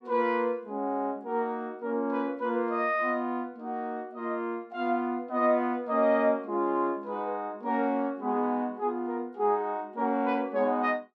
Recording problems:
none

